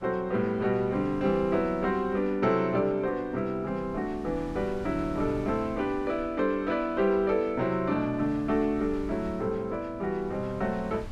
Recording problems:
wind on the microphone; below 140 Hz, SNR 19 dB

